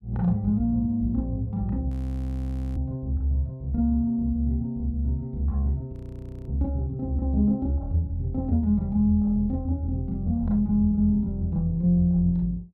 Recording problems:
audio freezing; at 2 s for 1 s and at 6 s for 0.5 s

